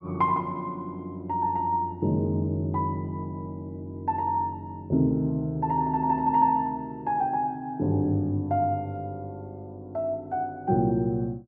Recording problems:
none

